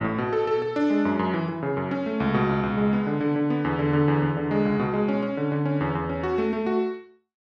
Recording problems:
none

